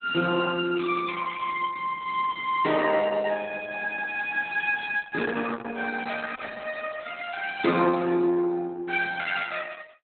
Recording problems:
lossy compression; Opus, log-spectral distance 4 dB, nothing above 3.9 kHz

